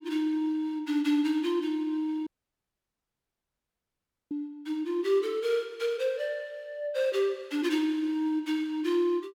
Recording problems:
dropout; at 2.5 s for 2 s

